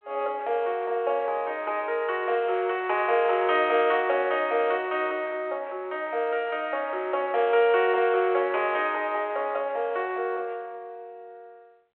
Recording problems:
phone line; 320 Hz to 3.4 kHz, G.726

